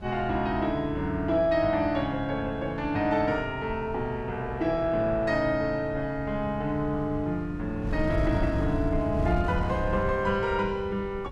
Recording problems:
wind noise; below 140 Hz, SNR 9 dB

